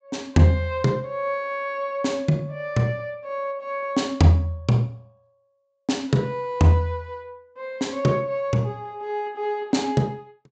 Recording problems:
treble cut off; nothing above 8 kHz

